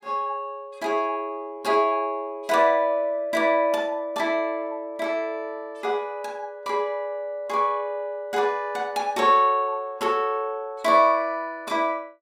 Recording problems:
none

